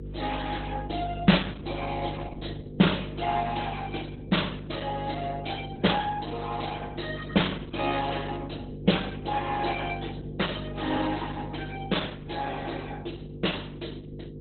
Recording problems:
codec artefacts; Opus, log-spectral distance 7 dB, nothing above 4 kHz
electrical hum; 50 Hz, harmonics up to 500 Hz, SNR 8 dB

